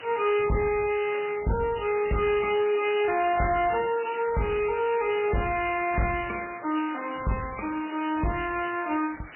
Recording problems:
lossy compression; MP3, log-spectral distance 19 dB, nothing above 2.7 kHz
distortion; hard clipping, uneven, signal-to-distortion ratio 11 dB
background hiss; SNR 17 dB

